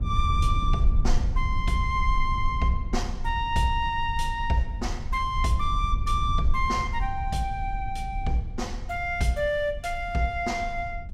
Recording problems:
rumble; below 68 Hz, SNR 3 dB

